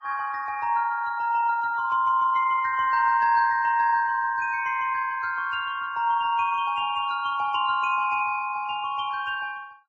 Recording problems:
codec artefacts; Vorbis, log-spectral distance 2 dB

